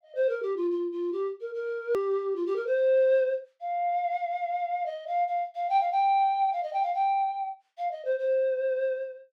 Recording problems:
edit click; at 2 s

